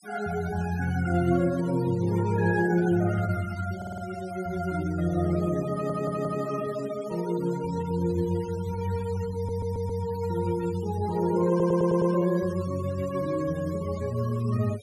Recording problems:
noise reduction artefacts; signal-to-artefact ratio 20 dB
stutter; 4 times, first at 4 s

